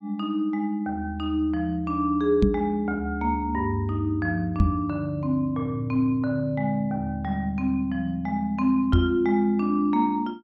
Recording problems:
knock on the microphone; at 2.5 s, at 4.5 s and at 9 s; peak +8 dB vs average level

